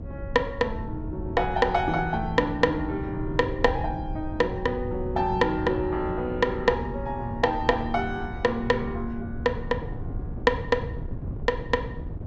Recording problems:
treble missing; nothing above 8 kHz
wind on the microphone; below 150 Hz, SNR 9 dB

